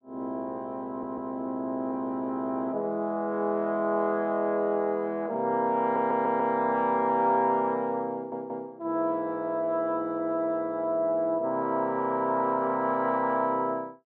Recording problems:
stutter; at 1 s, at 6 s and at 8 s

